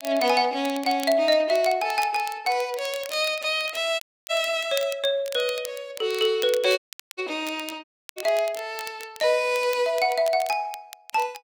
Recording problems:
crackle; vinyl, SNR 16 dB
dropout; at 4 s, at 7 s and at 8 s

